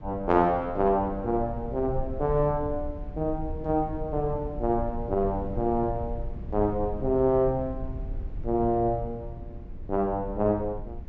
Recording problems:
low-pass filter; nothing above 8 kHz
low-frequency rumble; below 82 Hz, SNR 11 dB

